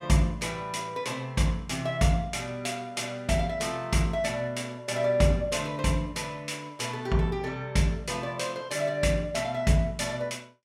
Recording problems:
none

